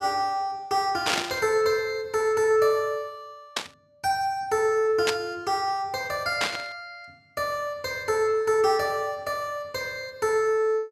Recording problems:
burst of static; 4 times, first at 1 s; peak +4 dB vs average level

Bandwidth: 14 kHz